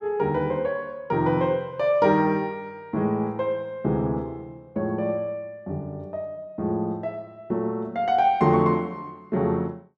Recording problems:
none

